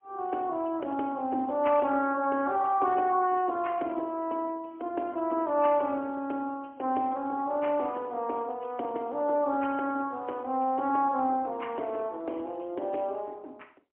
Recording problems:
phone line; 220 Hz to 3.3 kHz, AMR-NB, then MP3

